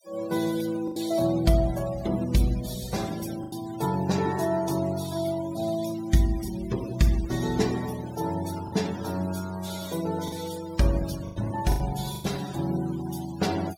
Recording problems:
noise reduction artefacts; signal-to-artefact ratio 15 dB
packet loss; 4% of the sound replaced, filled with the last packet

